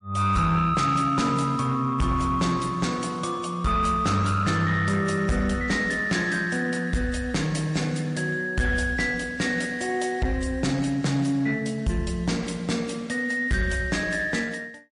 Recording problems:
lossy compression; MP3, log-spectral distance 3 dB, nothing above 10.4 kHz
distortion; soft clipping, signal-to-distortion ratio 11 dB

